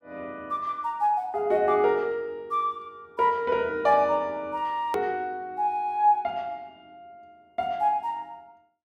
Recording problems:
edit click; at 5 s

